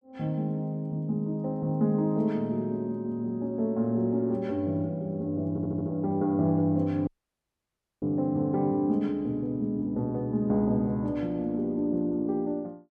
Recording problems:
stutter; at 5.5 s
audio cutting out; at 7 s for 1 s

